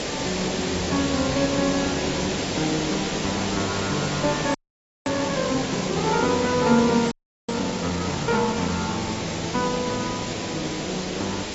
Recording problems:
codec artefacts; AAC, log-spectral distance 14 dB, nothing above 6.5 kHz
hiss; SNR 2 dB
frozen audio; at 4.5 s for 0.5 s and at 7 s

